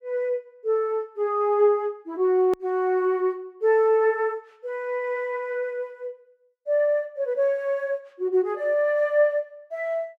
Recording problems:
click at an edit; at 2.5 s

